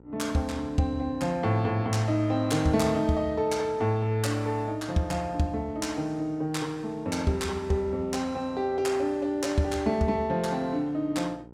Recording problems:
mains hum; 60 Hz, harmonics up to 1 kHz, SNR 24 dB

